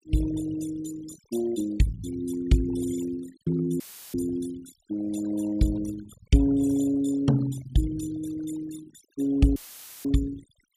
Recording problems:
denoising artefacts; signal-to-artefact ratio 15 dB
dropout; at 4 s and at 9.5 s; filled with static

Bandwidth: 15 kHz